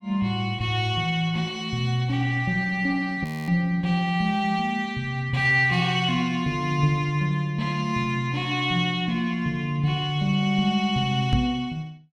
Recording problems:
frozen audio; at 3 s
microphone bump; at 11 s; peak +5 dB vs average level

